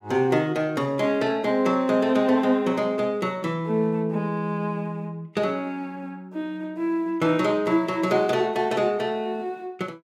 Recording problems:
none

